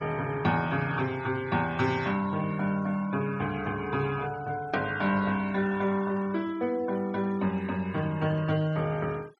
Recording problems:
denoising artefacts; signal-to-artefact ratio 21 dB

